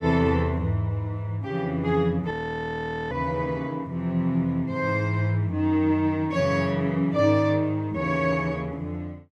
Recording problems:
audio freezing; at 2.5 s for 1 s

